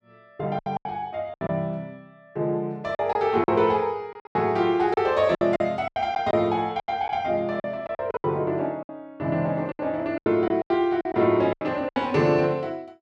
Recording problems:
packet loss; 13% of the sound replaced, filled with silence

